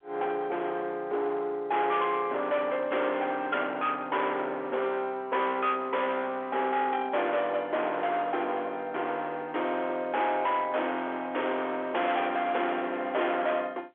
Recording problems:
telephone audio; 320 Hz to 3.5 kHz, G.711
distortion; hard clipping, signal-to-distortion ratio 8 dB

